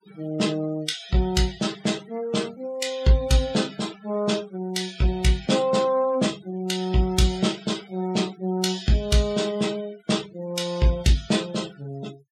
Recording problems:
noise reduction artefacts; signal-to-artefact ratio 18 dB

